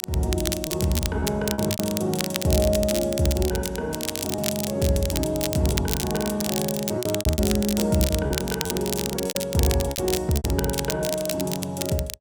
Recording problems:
crackle; vinyl, SNR 5 dB
packet loss; 9% of the sound replaced, filled with repeated pitch periods

